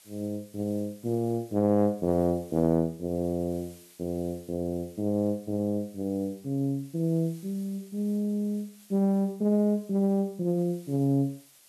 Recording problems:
background hiss; slope +1 dB per octave, SNR 26 dB

